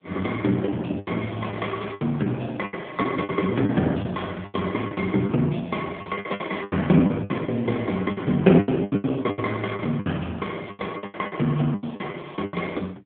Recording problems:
phone line; 130 Hz to 3.4 kHz, AMR-NB
lost packets; 15% of the sound replaced, filled with the last packet

